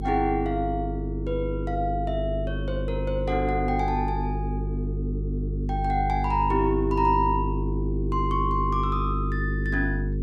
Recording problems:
hum; 50 Hz, harmonics up to 450 Hz, SNR 2 dB

